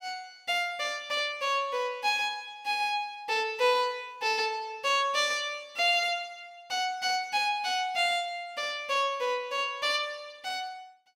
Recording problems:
none

